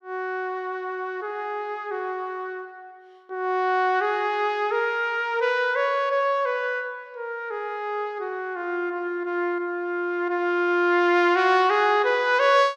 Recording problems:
none

